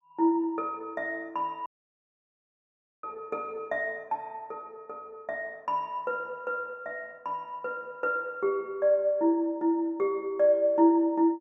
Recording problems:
audio cutting out; at 1.5 s for 1.5 s

